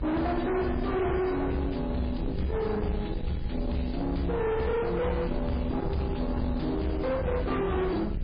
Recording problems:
codec artefacts; MP3, log-spectral distance 4 dB, nothing above 4.5 kHz
distorted audio; soft clipping, signal-to-distortion ratio 6 dB
hum; 60 Hz, harmonics up to 540 Hz, SNR 24 dB
background hiss; SNR 29 dB
low-frequency rumble; below 330 Hz, SNR 5 dB

